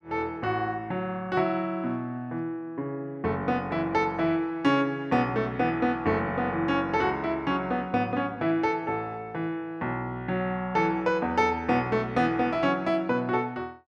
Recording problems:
none

